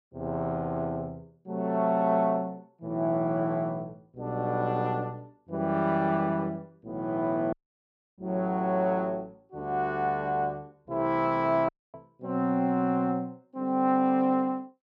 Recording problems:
dropout; at 7.5 s for 0.5 s and at 12 s

